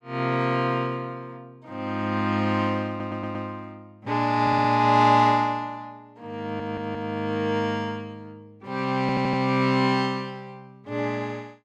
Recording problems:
stutter; 4 times, first at 3 s

